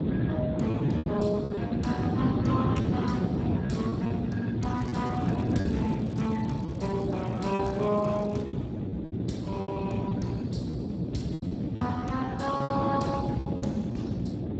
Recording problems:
codec artefacts; Speex, log-spectral distance 4 dB, nothing above 7.8 kHz
hum; 60 Hz, harmonics up to 600 Hz, SNR 5 dB
wind on the microphone; below 330 Hz, SNR -1 dB
lost packets; 9% of the sound replaced, filled with repeated pitch periods
crackle; from 5 to 8.5 s; loose cable, SNR 24 dB

